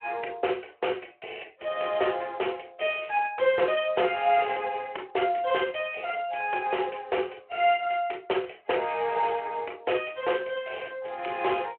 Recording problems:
phone line; 320 Hz to 3.3 kHz, Speex

